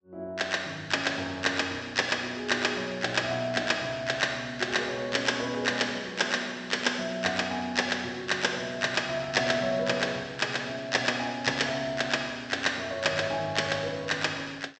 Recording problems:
low-pass filter; nothing above 8 kHz

